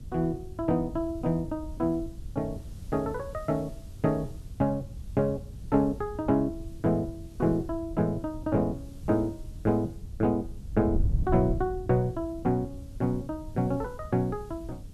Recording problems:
background hiss; SNR 28 dB
wind on the microphone; below 96 Hz, SNR 11 dB

